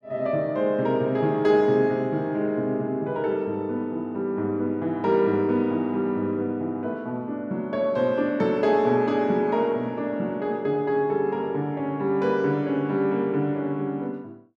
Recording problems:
none

